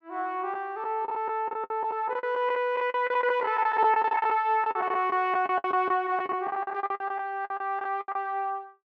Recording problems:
packet loss; 17% of the sound replaced, filled with the last packet

